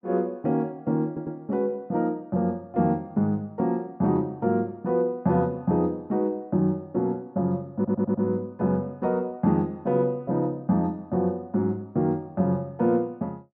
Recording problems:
audio stuttering; at 1 s and at 8 s

